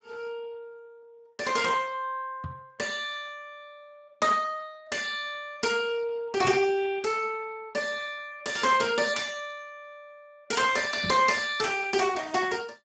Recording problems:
codec artefacts; Speex, log-spectral distance 4 dB, nothing above 7.6 kHz
knock on the microphone; at 2.5 s, at 6.5 s and at 11 s; peak -2 dB vs average level

